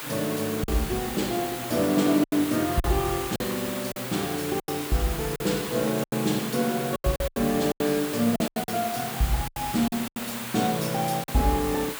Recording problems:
background hiss; SNR 7 dB
lost packets; 9% of the sound replaced, filled with silence

